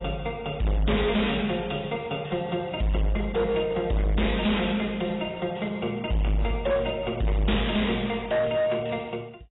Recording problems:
codec artefacts; AAC, log-spectral distance 6 dB, nothing above 3.8 kHz
distortion; hard clipping, uneven, signal-to-distortion ratio 7 dB

